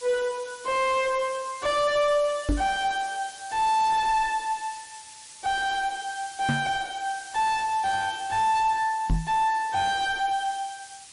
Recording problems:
lossy compression; MP3, log-spectral distance 9 dB, nothing above 8.7 kHz
distorted audio; soft clipping, signal-to-distortion ratio 5 dB
background hiss; slope +3 dB per octave, SNR 16 dB
knock on the microphone; at 2.5 s, at 6.5 s and at 9 s; peak +5 dB vs average level

